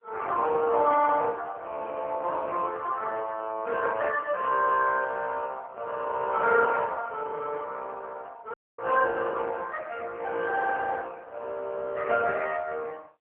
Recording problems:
telephone audio; 370 Hz to 2.6 kHz, AMR-NB
dropout; at 8.5 s

